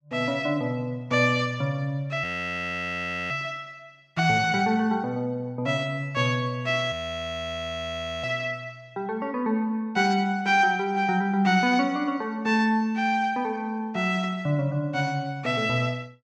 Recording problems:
frozen audio; at 2 s for 1 s and at 7 s for 1.5 s

